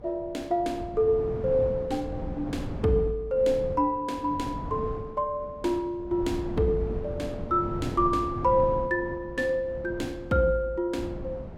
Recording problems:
wind noise; below 270 Hz, SNR 10 dB

